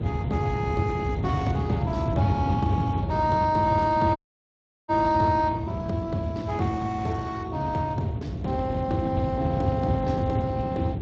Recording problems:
lossy codec; Speex, log-spectral distance 2 dB
rumble; below 210 Hz, SNR 3 dB
dropout; at 4 s for 0.5 s

